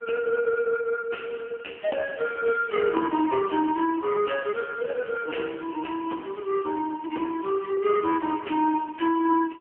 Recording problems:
telephone audio; 260 Hz to 3.1 kHz, AMR-NB

